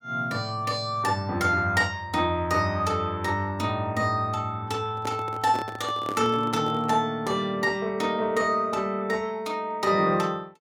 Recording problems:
microphone handling noise; from 5 to 7 s; peak -3 dB vs average level

